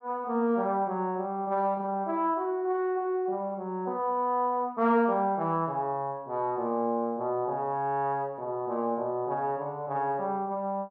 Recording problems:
none

